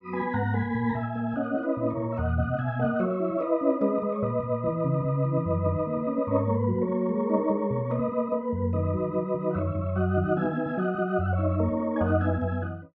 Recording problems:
none

